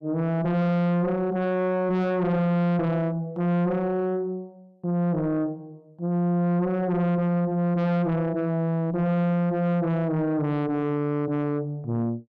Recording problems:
distortion; soft clipping, signal-to-distortion ratio 7 dB

